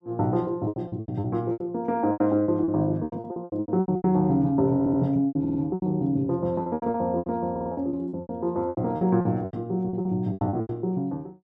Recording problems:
lost packets; 19% of the sound replaced, filled with repeated pitch periods
audio stuttering; at 5 s, at 5.5 s and at 7.5 s

